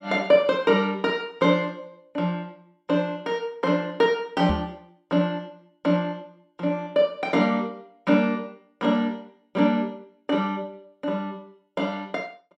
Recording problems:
knock on the microphone; at 4.5 s; peak +2 dB vs average level

